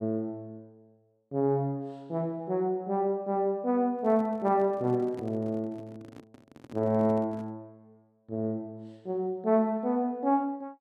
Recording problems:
microphone handling noise; from 4 to 7.5 s; peak -10 dB vs average level

